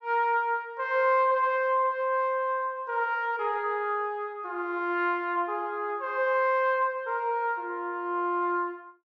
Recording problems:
none

